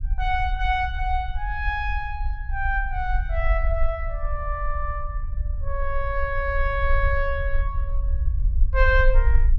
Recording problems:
low-frequency rumble; below 54 Hz, SNR 1 dB

